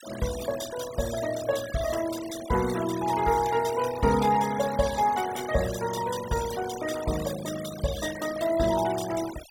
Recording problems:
noise reduction artefacts; signal-to-artefact ratio 12 dB

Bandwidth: 17.5 kHz